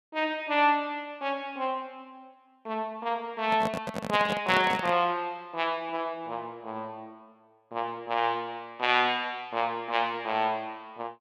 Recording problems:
handling noise; from 3.5 to 5 s; peak 0 dB vs average level

